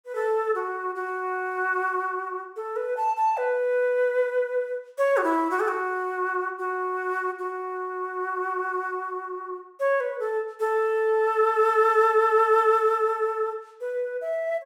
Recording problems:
none

